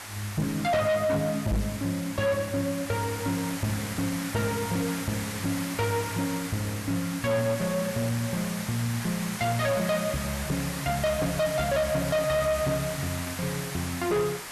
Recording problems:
distortion; hard clipping, uneven, signal-to-distortion ratio 11 dB
hiss; SNR 7 dB
knock on the microphone; at 1.5 s; peak +4 dB vs average level

